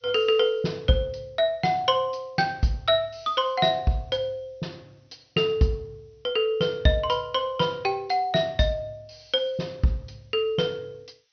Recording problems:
treble missing; nothing above 6.1 kHz
hiss; SNR 42 dB

